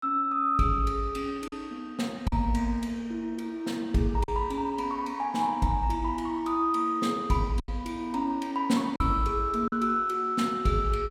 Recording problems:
packet loss; 3% of the sound replaced, filled with silence

